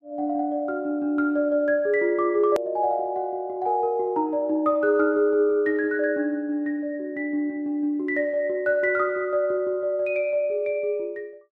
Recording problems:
hard cut with a click; at 2.5 s

